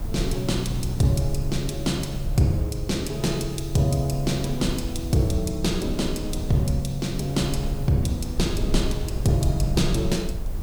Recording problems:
background hiss; slope +1 dB per octave, SNR 22 dB
low-frequency rumble; below 84 Hz, SNR 7 dB

